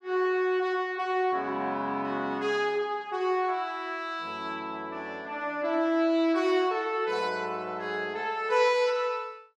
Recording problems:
none

